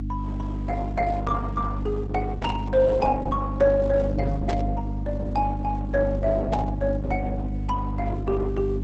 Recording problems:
lossy codec; Opus, log-spectral distance 3 dB, nothing above 8 kHz
mains hum; 50 Hz, harmonics up to 300 Hz, SNR 3 dB
burst of static; at 2.5 s, at 4.5 s and at 6.5 s; peak -6 dB vs average level

